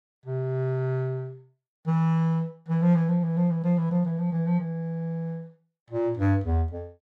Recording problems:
none

